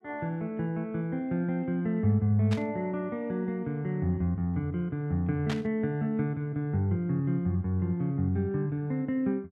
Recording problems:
static burst; at 2.5 s and at 5.5 s; peak -4 dB vs average level

